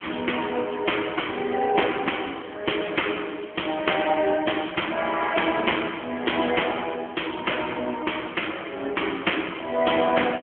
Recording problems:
phone line; 240 Hz to 3.3 kHz, AMR-NB

